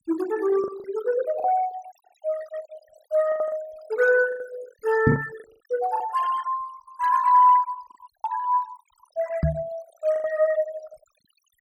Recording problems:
noise reduction artefacts; signal-to-artefact ratio 16 dB
lost packets; 7% of the sound replaced, filled with the last packet
microphone thump; at 5 s and at 9.5 s; peak +7 dB vs average level

